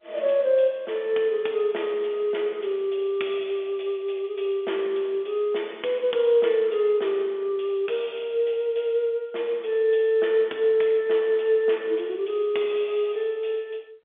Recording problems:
phone line; 280 Hz to 3.5 kHz, G.711

